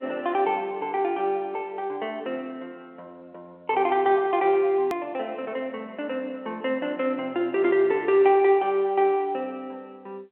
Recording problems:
telephone audio; 300 Hz to 3.5 kHz, G.711
click at an edit; at 5 s

